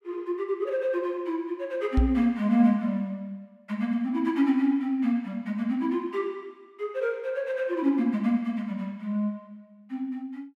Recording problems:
microphone bump; at 2 s; peak +7 dB vs average level

